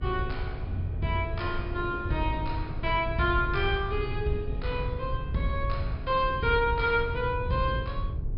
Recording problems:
treble missing; nothing above 5.5 kHz
electrical hum; 50 Hz, harmonics up to 450 Hz, SNR 22 dB
rumble; below 100 Hz, SNR 6 dB
wind noise; below 360 Hz, SNR 17 dB

